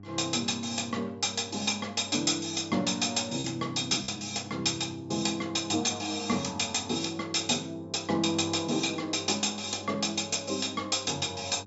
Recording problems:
treble cut off; nothing above 8 kHz
hum; 50 Hz, harmonics up to 800 Hz, SNR 20 dB
packet loss; 0.7% of the sound replaced, filled with repeated pitch periods

